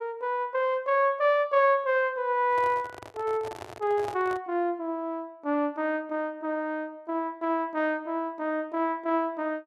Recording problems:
microphone handling noise; from 2.5 to 4.5 s; peak -7 dB vs average level

